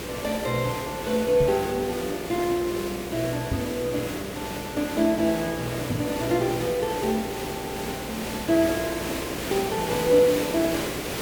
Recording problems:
hum; 60 Hz, harmonics up to 720 Hz, SNR 17 dB
background hiss; SNR 6 dB
microphone bump; at 1.5 s, at 3.5 s and at 6 s; peak +2 dB vs average level
stutter; at 7.5 s

